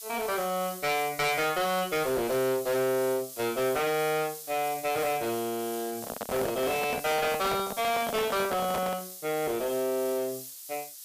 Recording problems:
distorted audio; hard clipping, uneven, signal-to-distortion ratio 7 dB
background hiss; SNR 11 dB
microphone handling noise; from 6 to 9 s; peak 0 dB vs average level

